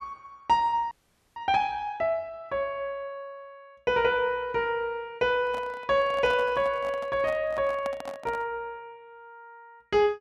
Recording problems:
audio freezing; at 1 s
handling noise; from 5.5 to 8.5 s; peak -5 dB vs average level

